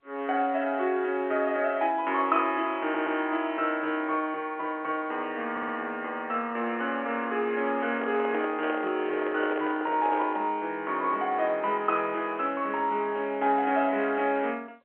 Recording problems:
phone line; 260 Hz to 3.3 kHz, G.711
audio stuttering; at 3 s and at 5.5 s
microphone handling noise; from 8 to 11 s; peak -3 dB vs average level

